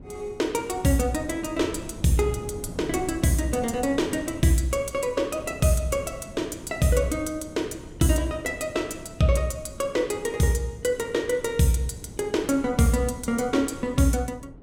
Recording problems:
wind on the microphone; below 280 Hz, SNR 16 dB

